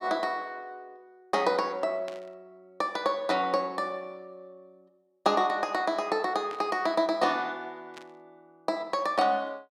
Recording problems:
static burst; at 2 s, at 6.5 s and at 8 s; peak -11 dB vs average level

